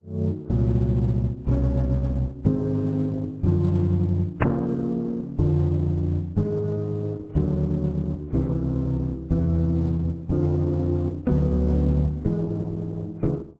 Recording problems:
lossy codec; MP3, then Opus, log-spectral distance 2 dB, nothing above 7.8 kHz

